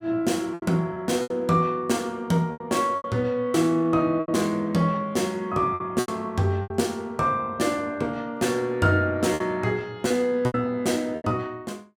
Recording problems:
lost packets; 8% of the sound replaced, filled with repeated pitch periods

